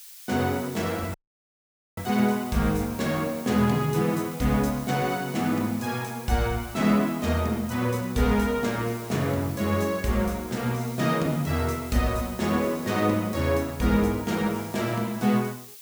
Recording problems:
background hiss; slope +7 dB per octave, SNR 17 dB
audio cutting out; at 1 s for 1 s

